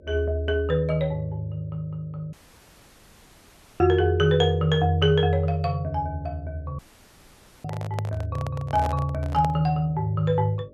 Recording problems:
electrical hum; 50 Hz, harmonics up to 600 Hz, SNR 28 dB
audio cutting out; at 2.5 s for 1.5 s and at 7 s for 1 s
microphone handling noise; from 7.5 to 9.5 s; peak -5 dB vs average level

